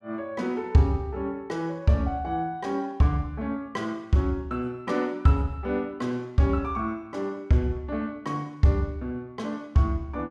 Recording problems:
none

